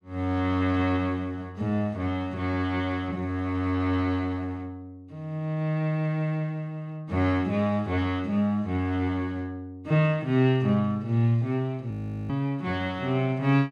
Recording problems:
frozen audio; at 12 s

